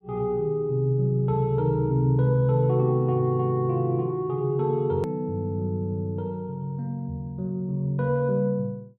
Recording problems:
click at an edit; at 5 s

